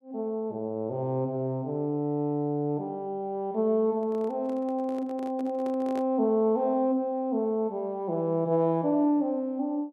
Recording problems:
microphone handling noise; from 4 to 6 s; peak -9 dB vs average level

